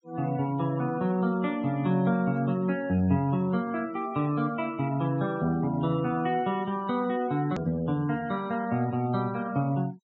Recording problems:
low-pass filter; nothing above 8 kHz
denoising artefacts; signal-to-artefact ratio 23 dB
click at an edit; at 7.5 s

